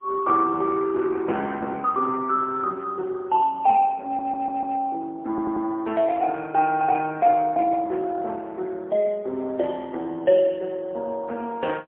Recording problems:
phone line; 220 Hz to 2.2 kHz, AMR-NB, then MP3
audio stuttering; at 4 s and at 5.5 s

